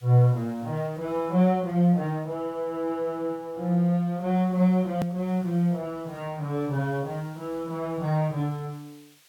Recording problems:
hiss; slope +2 dB per octave, SNR 30 dB
edit click; at 5 s

